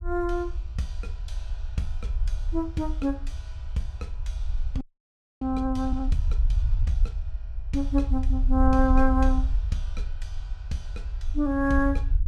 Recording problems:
rumble; below 58 Hz, SNR 2 dB
frozen audio; at 5 s for 0.5 s

